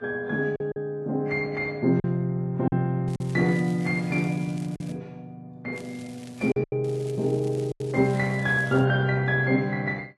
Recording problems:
codec artefacts; AAC, then Vorbis, log-spectral distance 2 dB, nothing above 13.1 kHz
packet loss; 4% of the sound replaced, filled with silence
crackling; from 3 to 5 s, at 6 s and from 7 to 9 s; loose cable, SNR 24 dB

